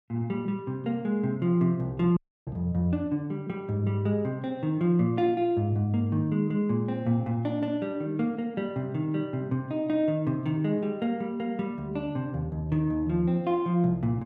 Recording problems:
dropout; at 2 s

